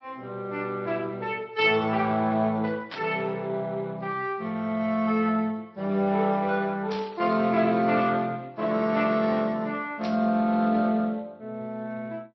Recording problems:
lossy compression; MP3, then Speex, log-spectral distance 2 dB
static burst; at 3 s, at 7 s and at 10 s; peak -7 dB vs average level

